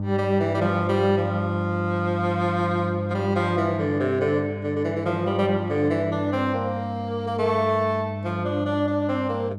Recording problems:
hum; 50 Hz, harmonics up to 600 Hz, SNR 6 dB

